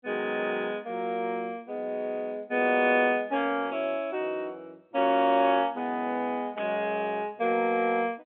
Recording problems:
phone line; 190 Hz to 3.5 kHz, G.711
burst of static; at 6.5 s; peak -9 dB vs average level

